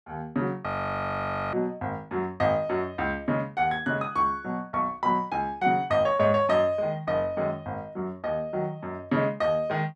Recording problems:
frozen audio; at 0.5 s for 1 s

